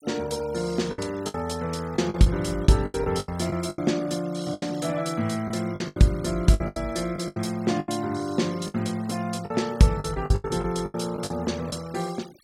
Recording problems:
noise reduction artefacts; signal-to-artefact ratio 21 dB
lost packets; 12% of the sound replaced, filled with the last packet

